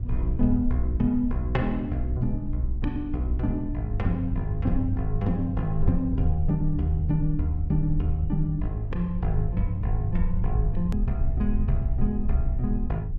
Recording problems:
low-frequency rumble; below 64 Hz, SNR 4 dB
hard cut with a click; at 11 s

